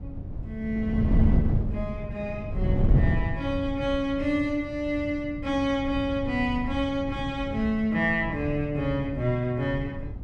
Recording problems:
wind on the microphone; below 150 Hz, SNR 3 dB

